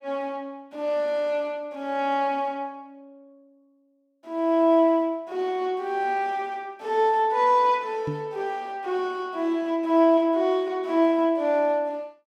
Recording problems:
knock on the microphone; at 8 s; peak -3 dB vs average level

